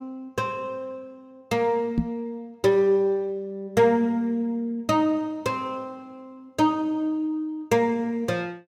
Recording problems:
knock on the microphone; at 2 s; peak +4 dB vs average level

